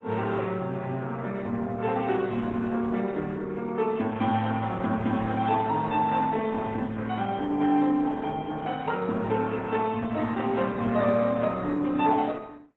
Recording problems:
codec artefacts; AAC, then Opus, log-spectral distance 3 dB

